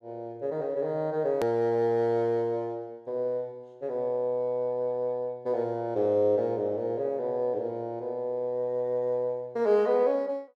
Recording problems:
edit click; at 1.5 s

